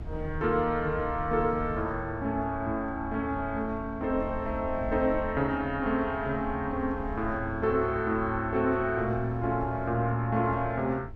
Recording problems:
rumble; below 100 Hz, SNR 12 dB

